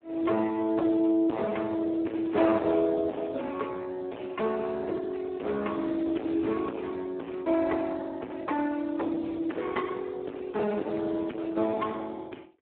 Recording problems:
phone line; 240 Hz to 2 kHz, Speex
distorted audio; hard clipping, signal-to-distortion ratio 5 dB

